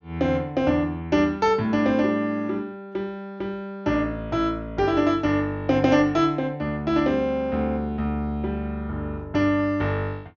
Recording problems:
low-pass filter; nothing above 6.8 kHz

